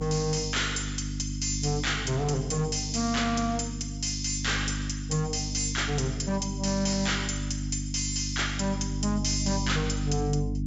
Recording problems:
treble missing; nothing above 8 kHz
distortion; hard clipping, signal-to-distortion ratio 7 dB
hum; 50 Hz, harmonics up to 300 Hz, SNR 5 dB

